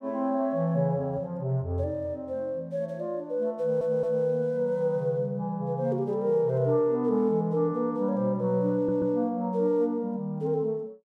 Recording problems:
audio stuttering; at 3.5 s and at 9 s

